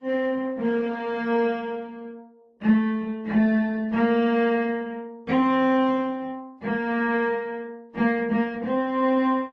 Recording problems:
lossy compression; Opus, then AAC, log-spectral distance 2 dB

